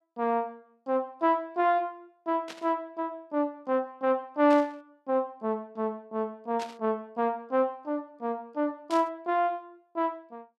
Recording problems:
burst of static; 4 times, first at 2.5 s; peak -7 dB vs average level

